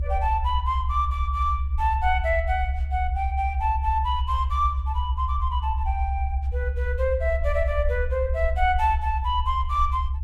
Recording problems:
rumble; below 70 Hz, strongest tone 68 Hz, SNR 1 dB

